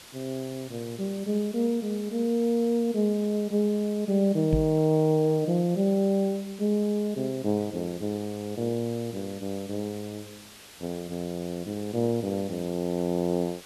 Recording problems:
background hiss; slope 0 dB per octave, SNR 19 dB
microphone bump; at 4.5 s; peak +4 dB vs average level

